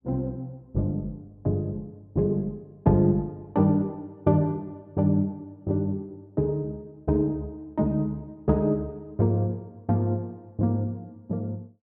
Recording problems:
none

